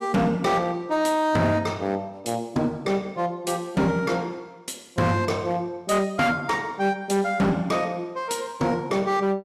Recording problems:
distortion; hard clipping, signal-to-distortion ratio 10 dB

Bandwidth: 14.5 kHz